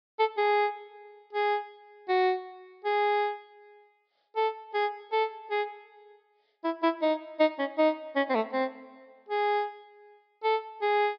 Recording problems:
treble missing; nothing above 5.5 kHz

